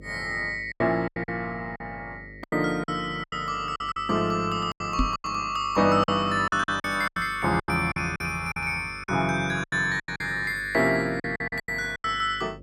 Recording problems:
electrical hum; 50 Hz, harmonics up to 600 Hz, SNR 21 dB
packet loss; 13% of the sound replaced, filled with silence
microphone thump; at 5 s and at 7 s; peak +4 dB vs average level

